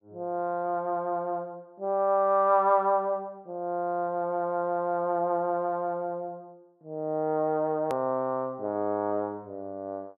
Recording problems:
edit click; at 8 s

